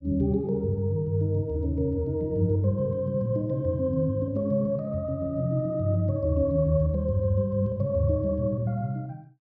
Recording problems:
treble cut off; nothing above 8 kHz

